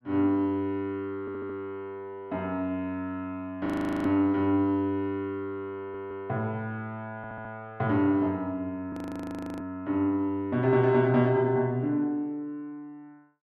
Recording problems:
audio stuttering; at 1 s, at 6 s and at 7 s
frozen audio; at 3.5 s and at 9 s for 0.5 s

